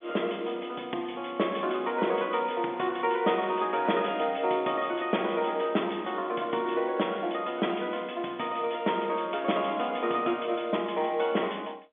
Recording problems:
phone line; 220 Hz to 3.5 kHz, G.711

